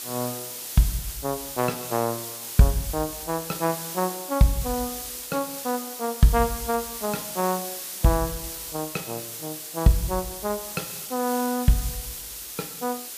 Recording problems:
background hiss; SNR 6 dB

